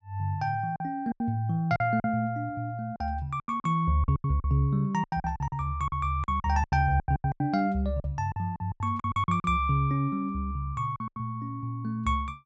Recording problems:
lost packets; 13% of the sound replaced, filled with silence

